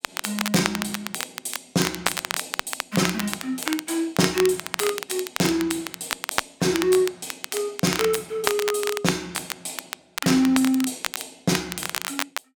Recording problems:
crackling; vinyl, SNR 5 dB

